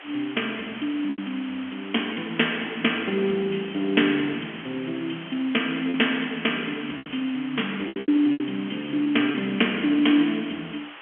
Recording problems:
telephone audio; 240 Hz to 3.3 kHz, G.711
background hiss; SNR 15 dB
packet loss; 5% of the sound replaced, filled with repeated pitch periods

